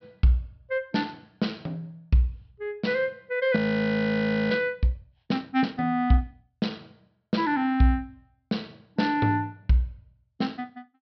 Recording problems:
treble missing; nothing above 5.5 kHz
audio freezing; at 3.5 s for 1 s

